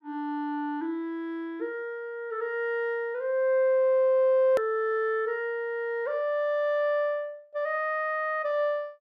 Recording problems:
hard cut with a click; at 4.5 s

